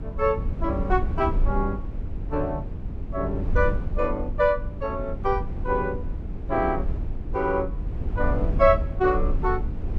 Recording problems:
hum; 50 Hz, harmonics up to 450 Hz, SNR 19 dB
rumble; below 80 Hz, SNR 4 dB

